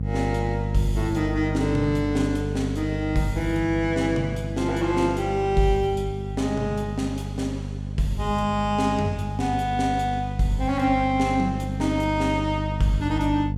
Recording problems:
hum; 50 Hz, harmonics up to 500 Hz, SNR 5 dB

